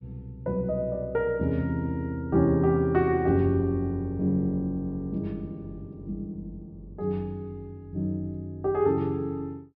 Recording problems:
low-pass filter; nothing above 5.5 kHz

